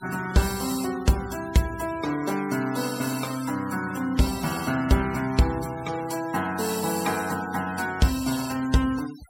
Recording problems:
denoising artefacts; signal-to-artefact ratio 14 dB

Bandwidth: 16 kHz